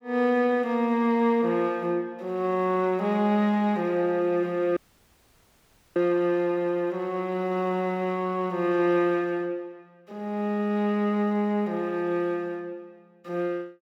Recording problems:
dropout; at 5 s for 1 s

